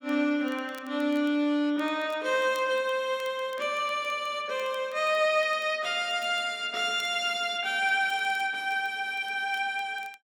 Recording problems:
crackle; vinyl, SNR 27 dB

